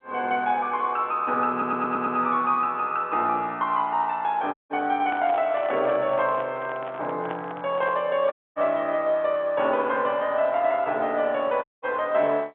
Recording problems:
phone line; 300 Hz to 3.5 kHz, G.711
audio stuttering; at 1.5 s
dropout; at 4.5 s, at 8.5 s and at 12 s
microphone handling noise; from 5 to 8 s; peak -6 dB vs average level

